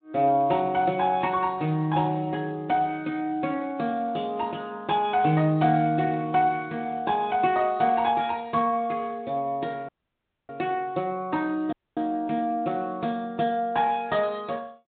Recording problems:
low-pass filter; nothing above 4 kHz
lossy compression; MP3, then Speex, log-spectral distance 2 dB
audio cutting out; at 10 s for 0.5 s and at 12 s

